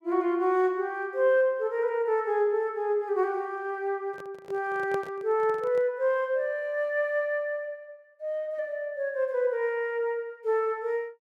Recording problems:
handling noise; from 4 to 6 s; peak -6 dB vs average level

